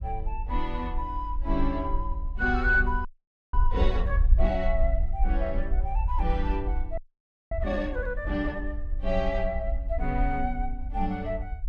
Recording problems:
low-frequency rumble; below 54 Hz, SNR 0 dB
audio freezing; at 3 s and at 7 s for 0.5 s

